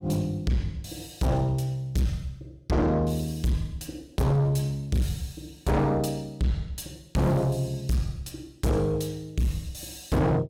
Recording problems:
distortion; soft clipping, signal-to-distortion ratio 6 dB

